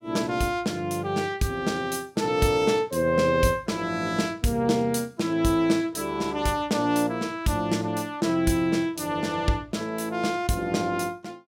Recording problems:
none

